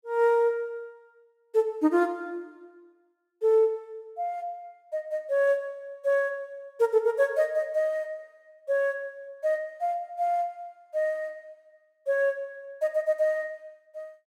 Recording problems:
none

